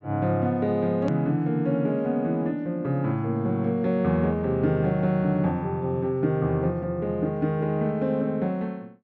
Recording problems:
treble missing; nothing above 8 kHz
click at an edit; at 1 s

